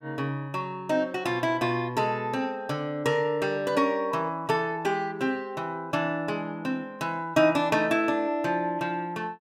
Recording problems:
none

